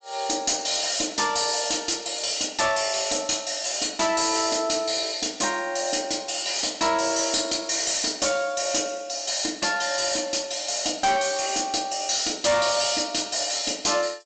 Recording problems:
treble cut off; nothing above 8 kHz
distortion; hard clipping, uneven, signal-to-distortion ratio 10 dB

